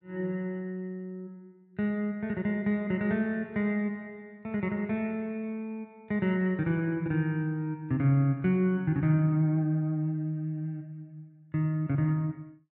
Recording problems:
none

